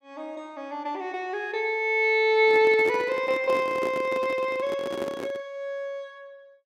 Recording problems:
microphone handling noise; from 2.5 to 5.5 s; peak -4 dB vs average level

